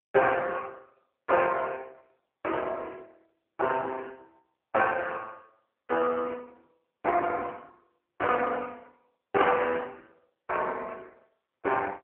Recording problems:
telephone audio; 340 Hz to 3.3 kHz, AMR-NB

